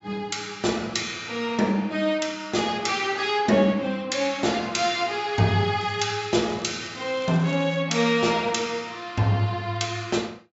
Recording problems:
treble missing; nothing above 8 kHz
crackling; from 6 to 8 s; loose cable, SNR 23 dB

